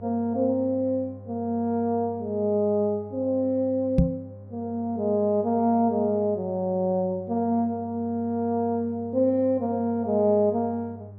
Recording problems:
mains hum; 50 Hz, harmonics up to 800 Hz, SNR 18 dB
knock on the microphone; at 4 s; peak +9 dB vs average level

